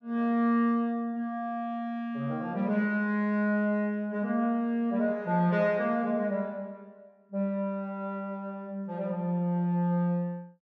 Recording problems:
none

